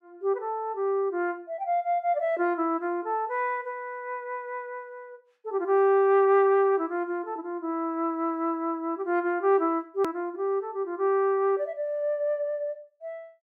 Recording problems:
hard cut with a click; at 10 s

